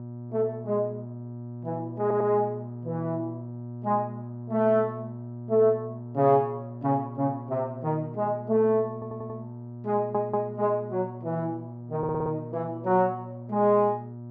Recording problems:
electrical hum; 60 Hz, harmonics up to 960 Hz, SNR 12 dB
audio stuttering; 4 times, first at 2 s

